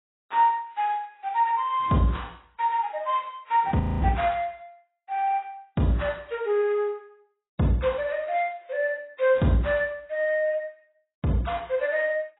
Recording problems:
codec artefacts; AAC, log-spectral distance 2 dB, nothing above 3.8 kHz
frozen audio; at 4 s

